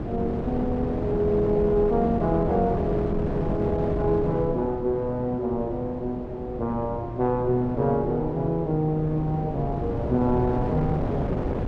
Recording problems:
wind on the microphone; below 420 Hz, SNR 5 dB

